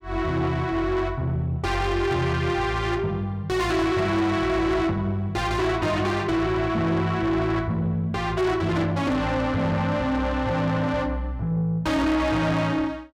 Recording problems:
distortion; soft clipping, signal-to-distortion ratio 10 dB

